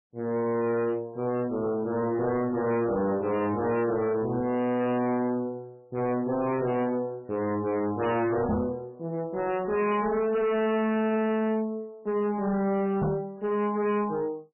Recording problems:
lossy compression; MP3, log-spectral distance 2 dB, nothing above 2.9 kHz
distortion; hard clipping, signal-to-distortion ratio 7 dB
knock on the microphone; at 8.5 s and at 13 s; peak +4 dB vs average level

